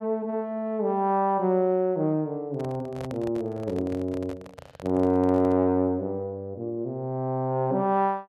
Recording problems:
handling noise; from 2.5 to 5.5 s; peak -9 dB vs average level

